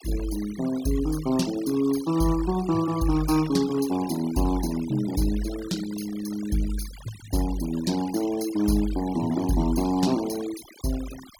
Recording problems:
noise reduction artefacts; signal-to-artefact ratio 16 dB

